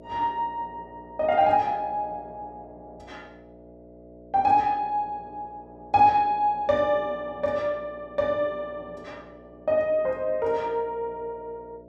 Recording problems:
hum; 60 Hz, harmonics up to 660 Hz, SNR 22 dB

